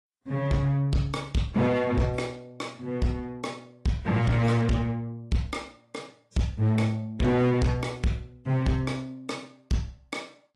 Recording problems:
lossy codec; AAC, log-spectral distance 2 dB
distorted audio; hard clipping, uneven, signal-to-distortion ratio 10 dB

